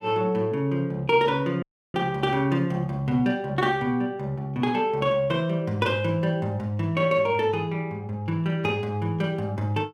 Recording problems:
audio cutting out; at 1.5 s

